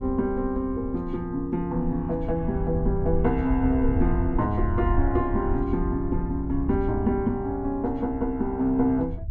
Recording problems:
rumble; below 84 Hz, SNR 6 dB

